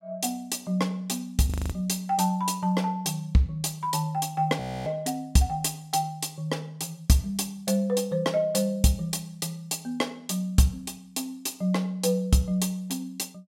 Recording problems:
audio freezing; at 1.5 s and at 4.5 s

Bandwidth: 16 kHz